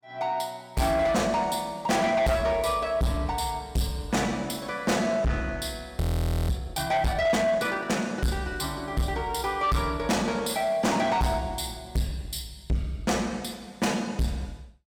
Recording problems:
distortion; soft clipping, signal-to-distortion ratio 6 dB
audio freezing; at 6 s

